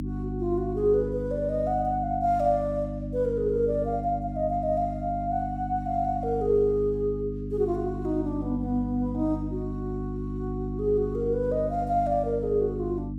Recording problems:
hum; 50 Hz, harmonics up to 300 Hz, SNR 6 dB

